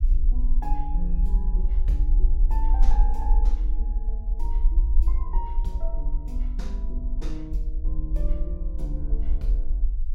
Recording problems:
low-frequency rumble; below 44 Hz, SNR -12 dB

